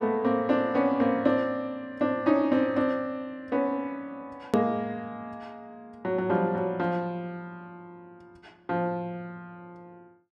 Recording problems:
click at an edit; at 4.5 s

